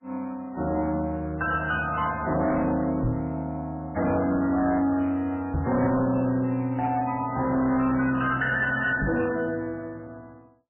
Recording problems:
lossy compression; MP3, log-spectral distance 3 dB, nothing above 2.9 kHz
distortion; hard clipping, signal-to-distortion ratio 11 dB
microphone bump; at 3 s, at 5.5 s and at 9 s; peak +3 dB vs average level

